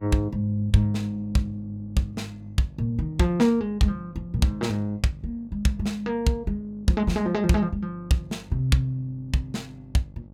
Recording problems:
electrical hum; 50 Hz, harmonics up to 650 Hz, SNR 22 dB

